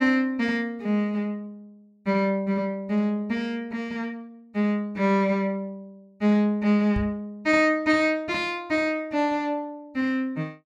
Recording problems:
microphone thump; at 7 s; peak -1 dB vs average level

